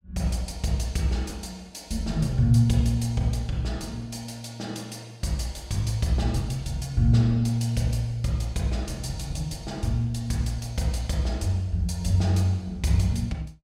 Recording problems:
none

